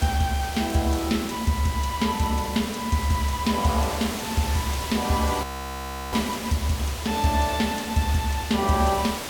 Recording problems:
background hiss; slope -3 dB per octave, SNR 8 dB
crackle; at 0.5 s, at 2 s and at 4 s; loose cable, SNR 23 dB
audio freezing; at 5.5 s for 0.5 s

